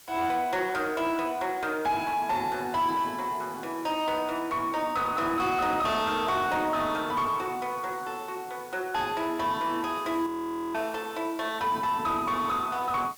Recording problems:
distortion; soft clipping, signal-to-distortion ratio 10 dB
hiss; slope +1 dB per octave, SNR 21 dB
audio freezing; at 10 s

